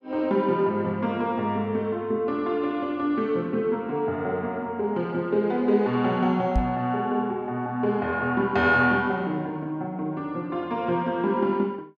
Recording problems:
microphone thump; at 6.5 s; peak +3 dB vs average level

